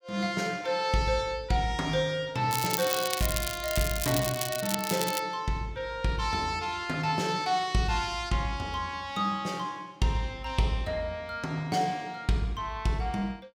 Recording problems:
crackling; from 2.5 to 5 s; loose cable, SNR 3 dB

